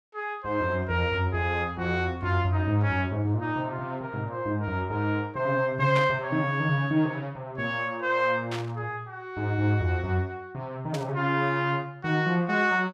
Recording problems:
burst of static; at 6 s, at 8.5 s and at 11 s; peak -3 dB vs average level

